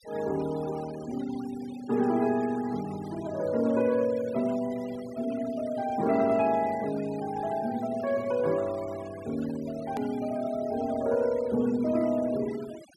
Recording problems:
noise reduction artefacts; signal-to-artefact ratio 19 dB
click at an edit; at 10 s

